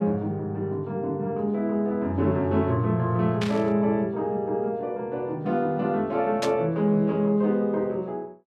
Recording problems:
static burst; at 3.5 s and at 6.5 s; peak -1 dB vs average level

